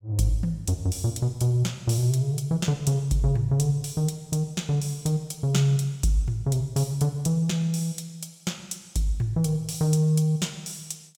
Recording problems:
none

